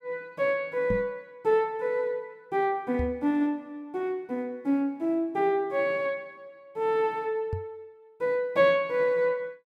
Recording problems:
microphone bump; at 1 s, at 3 s and at 7.5 s; peak 0 dB vs average level

